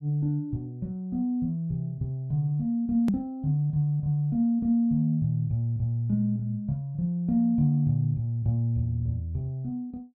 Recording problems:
click at an edit; at 3 s

